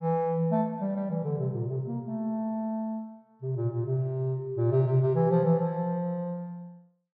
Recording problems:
none

